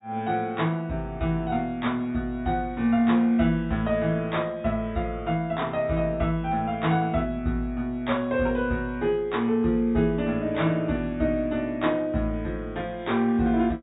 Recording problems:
low-pass filter; nothing above 4 kHz

